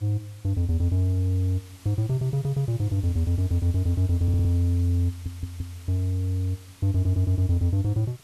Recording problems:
hiss; slope 0 dB per octave, SNR 25 dB
audio stuttering; at 4 s, at 5 s and at 7 s

